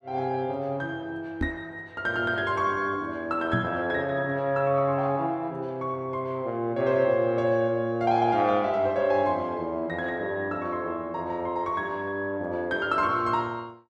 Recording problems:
microphone bump; at 1.5 s and at 3.5 s; peak +2 dB vs average level

